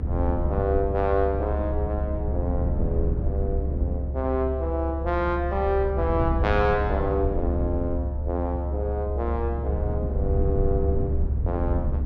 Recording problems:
rumble; below 92 Hz, strongest tone 70 Hz, SNR 0 dB

